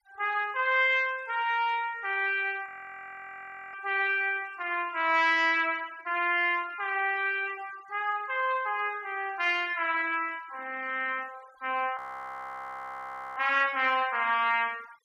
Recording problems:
denoising artefacts; signal-to-artefact ratio 25 dB
frozen audio; at 2.5 s for 1 s and at 12 s for 1.5 s

